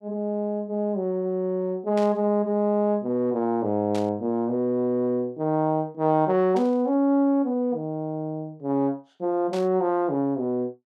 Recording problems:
static burst; 4 times, first at 2 s; peak -10 dB vs average level

